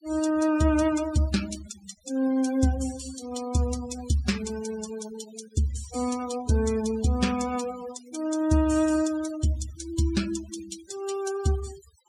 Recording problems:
noise reduction artefacts; signal-to-artefact ratio 14 dB

